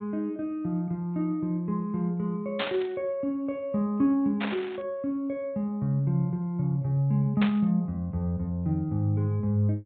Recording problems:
treble cut off; nothing above 4 kHz
burst of static; at 2.5 s, at 4.5 s and at 7.5 s; peak +1 dB vs average level

